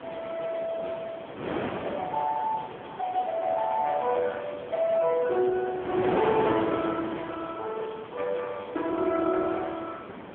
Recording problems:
phone line; 280 Hz to 3.3 kHz, AMR-NB
wind on the microphone; below 1 kHz, SNR 8 dB

